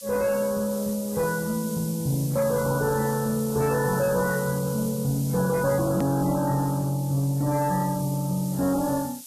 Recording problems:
lossy codec; AAC, then MP3, log-spectral distance 2 dB, nothing above 13.7 kHz
distortion; soft clipping, signal-to-distortion ratio 10 dB
background hiss; SNR 13 dB
edit click; at 6 s

